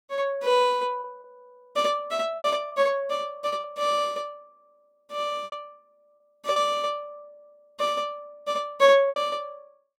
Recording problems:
lost packets; 7% of the sound replaced, filled with repeated pitch periods

